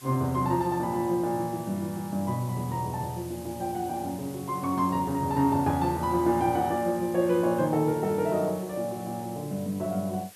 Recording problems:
hiss; slope +1 dB per octave, SNR 19 dB

